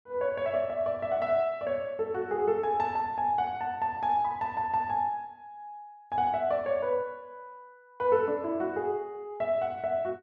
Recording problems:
none

